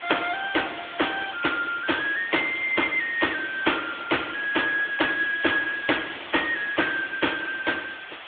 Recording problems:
telephone audio; 280 Hz to 3.5 kHz, AMR-NB
background hiss; SNR 14 dB

